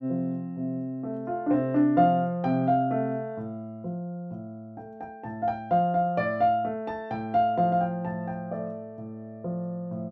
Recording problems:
none

